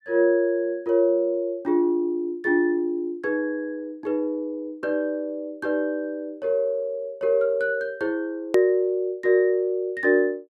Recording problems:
hard cut with a click; at 8.5 s

